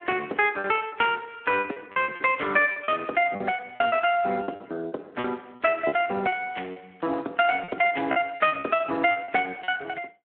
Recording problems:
telephone audio; 240 Hz to 3.4 kHz, Speex
packet loss; 11% of the sound replaced, filled with repeated pitch periods

